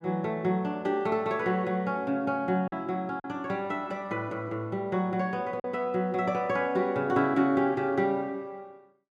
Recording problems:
lost packets; 1.4% of the sound replaced, filled with silence

